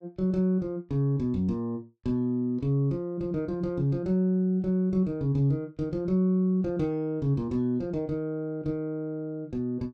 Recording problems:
none

